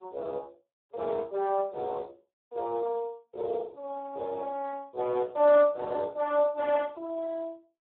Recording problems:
telephone audio; 340 Hz to 2 kHz, Speex

